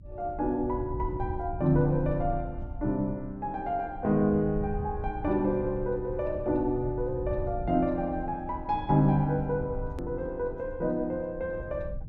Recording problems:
low-frequency rumble; below 92 Hz, SNR 11 dB
click at an edit; at 10 s

